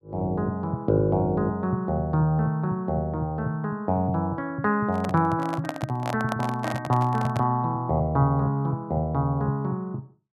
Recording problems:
microphone handling noise; from 5 to 7.5 s; peak -1 dB vs average level

